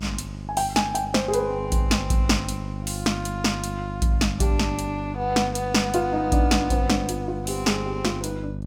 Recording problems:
electrical hum; 50 Hz, harmonics up to 600 Hz, SNR 9 dB

